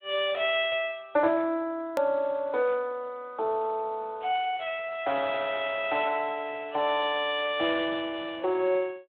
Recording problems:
telephone audio; 300 Hz to 3.7 kHz, Speex
click at an edit; at 2 s

